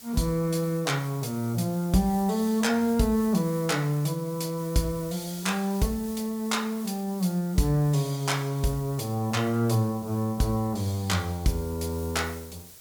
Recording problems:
background hiss; SNR 18 dB

